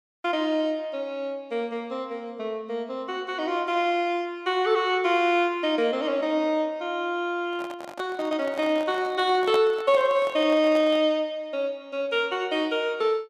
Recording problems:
handling noise; from 7.5 to 11 s; peak -2 dB vs average level

